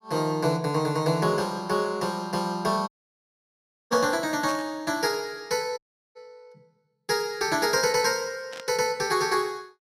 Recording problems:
dropout; at 3 s for 1 s and at 6 s
burst of static; at 4.5 s and at 8.5 s; peak -9 dB vs average level

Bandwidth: 15.5 kHz